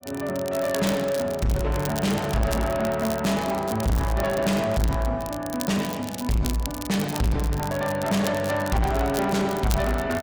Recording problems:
distortion; soft clipping, signal-to-distortion ratio 6 dB
crackle; vinyl, SNR 13 dB

